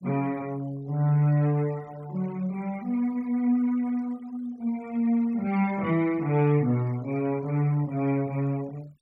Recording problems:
denoising artefacts; signal-to-artefact ratio 25 dB

